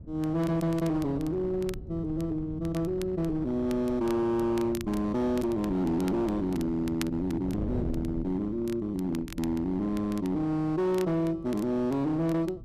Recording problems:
distortion; hard clipping, signal-to-distortion ratio 12 dB
wind noise; below 170 Hz, SNR 13 dB
crackling; vinyl, SNR 21 dB

